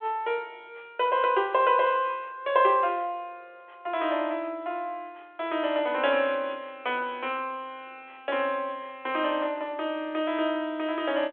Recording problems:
telephone audio; 320 Hz to 3.5 kHz, G.726

